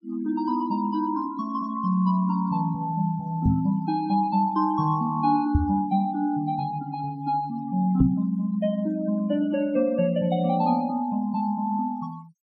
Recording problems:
noise reduction artefacts; signal-to-artefact ratio 25 dB
microphone thump; at 3.5 s, at 5.5 s and at 8 s; peak +6 dB vs average level

